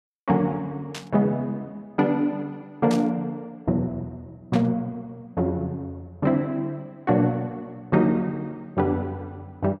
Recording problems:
burst of static; at 1 s, at 3 s and at 4.5 s; peak -6 dB vs average level

